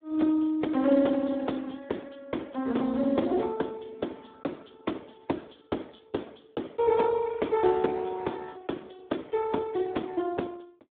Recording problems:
telephone audio; 190 Hz to 3.6 kHz, Speex

